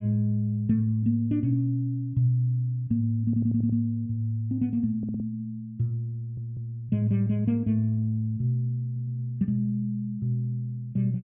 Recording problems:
audio stuttering; 4 times, first at 3 s

